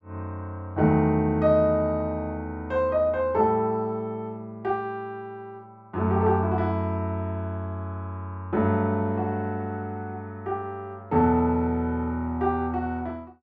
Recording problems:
none

